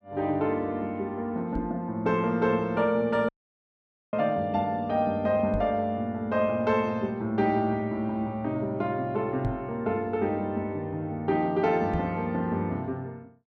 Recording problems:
microphone thump; 4 times, first at 1.5 s; peak 0 dB vs average level
dropout; at 3.5 s for 1 s

